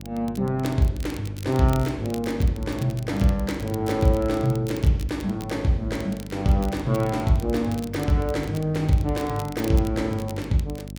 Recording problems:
electrical hum; 50 Hz, harmonics up to 650 Hz, SNR 14 dB
crackle; vinyl, SNR 20 dB

